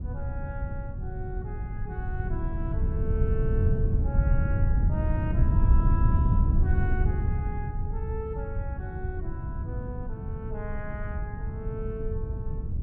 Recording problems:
wind on the microphone; below 110 Hz, SNR -10 dB

